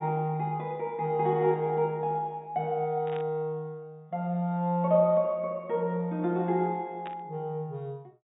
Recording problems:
treble missing; nothing above 4 kHz
static burst; at 3 s and at 7 s; peak -11 dB vs average level

